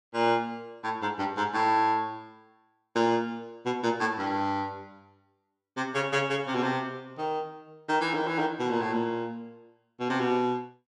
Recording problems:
none

